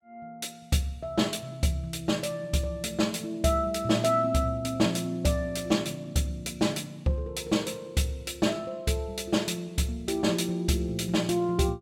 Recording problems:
none

